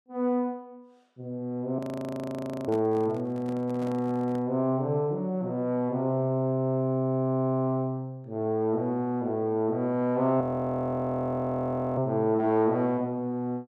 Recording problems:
frozen audio; at 2 s for 1 s and at 10 s for 1.5 s
handling noise; from 2.5 to 4.5 s; peak -9 dB vs average level

